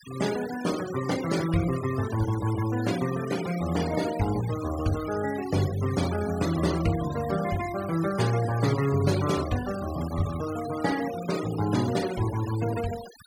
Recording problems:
denoising artefacts; signal-to-artefact ratio 13 dB

